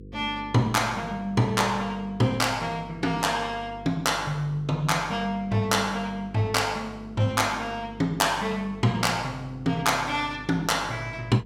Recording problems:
electrical hum; 50 Hz, harmonics up to 500 Hz, SNR 18 dB

